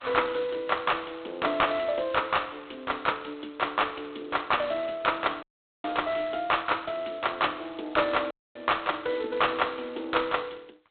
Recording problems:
phone line; 260 Hz to 3.9 kHz, G.726
audio cutting out; at 5.5 s and at 8.5 s

